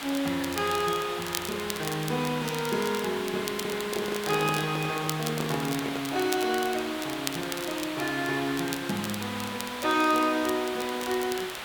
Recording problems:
background hiss; SNR 6 dB
crackling; vinyl, SNR 10 dB
microphone handling noise; from 3.5 to 6 s; peak -1 dB vs average level

